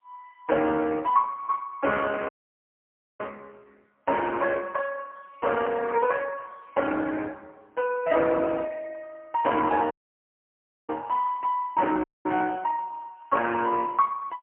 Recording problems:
phone line; 280 Hz to 3.1 kHz, AMR-NB, then MP3
audio cutting out; at 2.5 s for 1 s, at 10 s for 1 s and at 12 s

